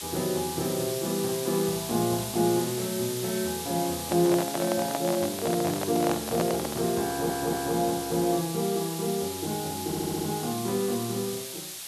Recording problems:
hiss; slope +3 dB per octave, SNR 6 dB
handling noise; from 4 to 7 s; peak +2 dB vs average level
audio stuttering; at 7 s and at 10 s

